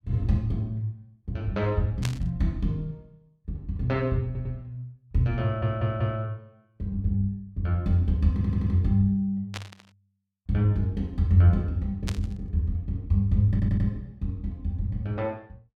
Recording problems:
burst of static; at 2 s, at 9.5 s and at 12 s; peak -3 dB vs average level
audio stuttering; 4 times, first at 4.5 s

